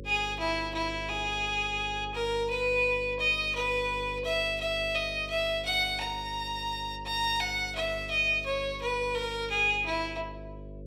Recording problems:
hum; 50 Hz, harmonics up to 550 Hz, SNR 15 dB

